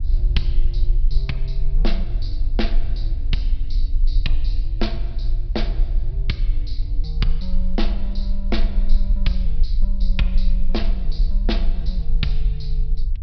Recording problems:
treble cut off; nothing above 5.5 kHz
rumble; below 40 Hz, strongest tone 20 Hz, SNR -7 dB

